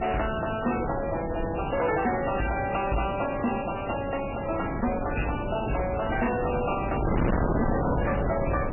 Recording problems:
lossy codec; MP3, log-spectral distance 15 dB, nothing above 2.9 kHz
distortion; soft clipping, signal-to-distortion ratio 6 dB
background hiss; SNR 27 dB
wind noise; below 550 Hz, SNR 3 dB

